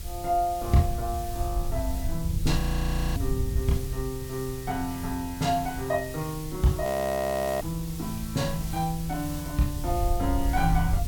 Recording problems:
background hiss; SNR 13 dB
wind noise; below 84 Hz, SNR 5 dB
audio freezing; at 2.5 s for 0.5 s and at 7 s for 1 s

